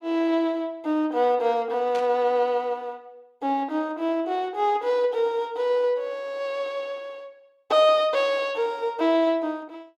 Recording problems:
burst of static; at 2 s; peak -11 dB vs average level

